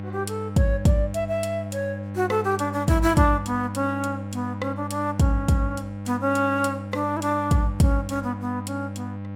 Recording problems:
hum; 50 Hz, harmonics up to 1.1 kHz, SNR 9 dB

